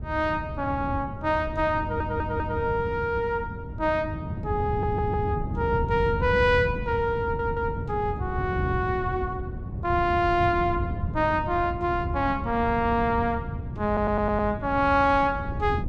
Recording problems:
wind on the microphone; below 170 Hz, SNR 7 dB
audio stuttering; 4 times, first at 2 s

